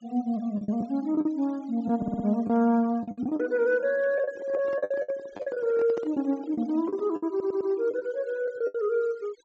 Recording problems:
low-pass filter; nothing above 8 kHz
noise reduction artefacts; signal-to-artefact ratio 26 dB
packet loss; 11% of the sound replaced, filled with the last packet
audio stuttering; at 2 s and at 7.5 s
handling noise; from 4 to 7.5 s; peak -5 dB vs average level

